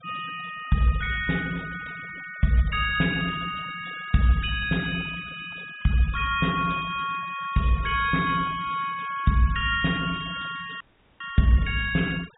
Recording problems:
treble cut off; nothing above 4 kHz
noise reduction artefacts; signal-to-artefact ratio 19 dB
audio cutting out; at 11 s

